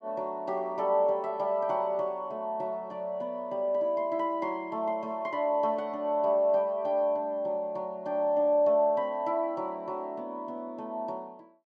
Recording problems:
none

